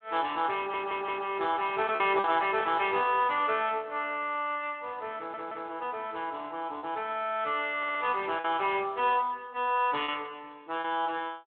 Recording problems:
phone line; 260 Hz to 3.4 kHz, Speex
packet loss; 2% of the sound replaced, filled with repeated pitch periods
stutter; at 0.5 s, at 5 s and at 8 s

